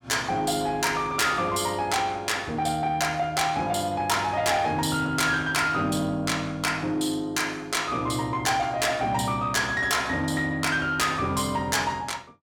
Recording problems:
distortion; soft clipping, signal-to-distortion ratio 11 dB

